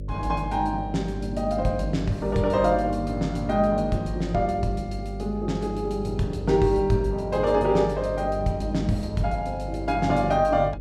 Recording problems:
mains hum; 50 Hz, harmonics up to 550 Hz, SNR 10 dB

